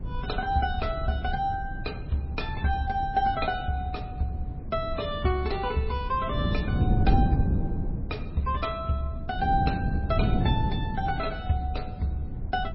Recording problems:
codec artefacts; MP3, log-spectral distance 2 dB, nothing above 5.5 kHz
low-frequency rumble; below 94 Hz, SNR 10 dB
wind on the microphone; below 200 Hz, SNR 2 dB

